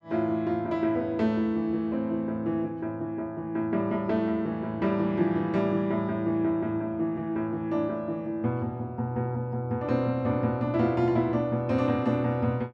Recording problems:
none

